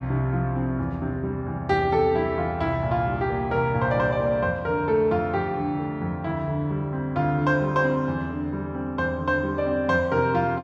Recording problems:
none

